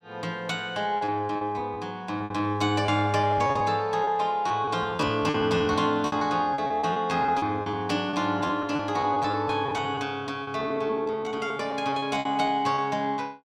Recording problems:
packet loss; 14% of the sound replaced, filled with repeated pitch periods

